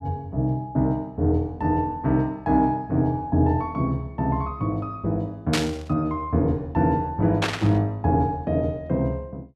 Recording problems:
static burst; at 5.5 s and at 7.5 s; peak +4 dB vs average level

